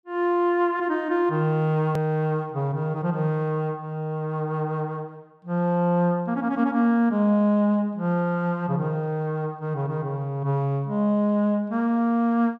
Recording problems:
click at an edit; at 2 s

